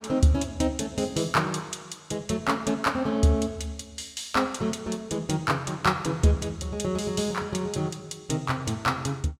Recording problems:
none

